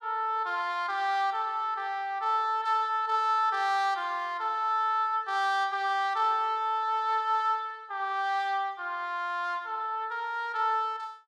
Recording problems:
none

